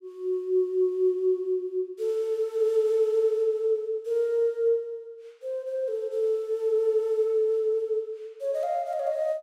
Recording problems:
none

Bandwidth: 16 kHz